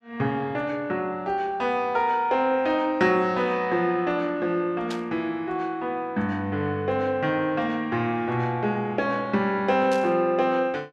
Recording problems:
burst of static; at 5 s and at 10 s; peak -7 dB vs average level

